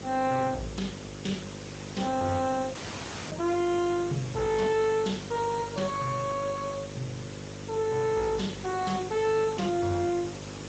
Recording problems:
codec artefacts; Speex, log-spectral distance 10 dB, nothing above 7.3 kHz
distorted audio; soft clipping, signal-to-distortion ratio 9 dB
hum; 50 Hz, harmonics up to 550 Hz, SNR 12 dB
background hiss; slope -2 dB per octave, SNR 14 dB
dropout; at 3 s for 0.5 s

